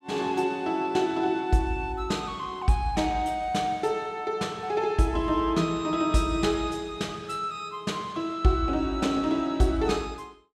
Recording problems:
none

